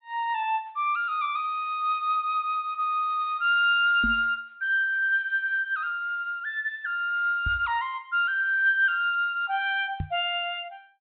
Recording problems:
low-pass filter; nothing above 4 kHz
microphone thump; at 4 s, at 7.5 s and at 10 s; peak -2 dB vs average level

